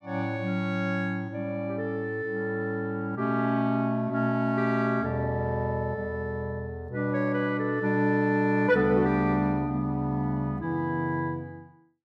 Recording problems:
none

